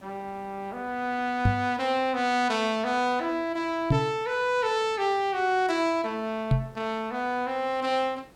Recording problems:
hiss; slope -6 dB per octave, SNR 27 dB
microphone thump; at 1.5 s, at 4 s and at 6.5 s; peak +8 dB vs average level

